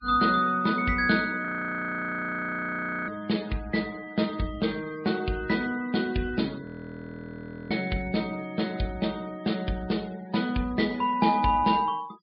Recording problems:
low-pass filter; nothing above 5 kHz
denoising artefacts; signal-to-artefact ratio 22 dB
audio freezing; at 1.5 s for 1.5 s and at 6.5 s for 1 s

